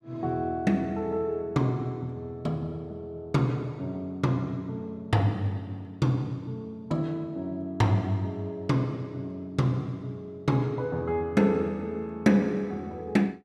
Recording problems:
none

